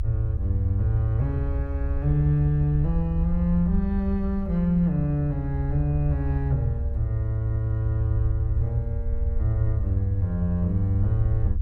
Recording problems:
low-frequency rumble; below 78 Hz, SNR 3 dB

